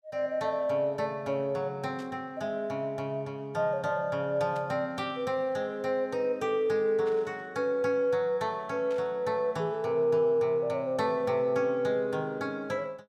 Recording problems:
burst of static; 4 times, first at 2 s; peak -16 dB vs average level

